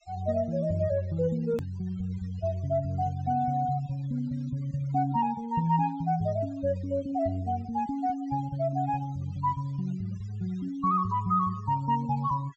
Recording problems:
treble missing; nothing above 8 kHz
noise reduction artefacts; signal-to-artefact ratio 24 dB
hard cut with a click; at 1.5 s

